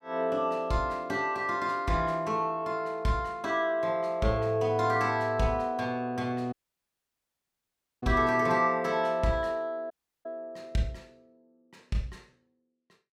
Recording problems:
dropout; at 6.5 s for 1.5 s and at 10 s

